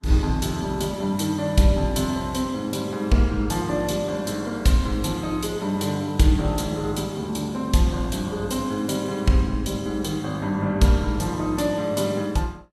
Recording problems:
lossy codec; Vorbis, log-spectral distance 3 dB, nothing above 13.1 kHz

